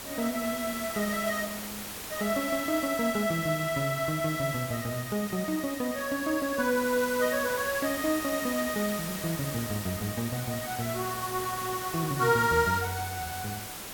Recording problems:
background hiss; slope -2 dB per octave, SNR 7 dB

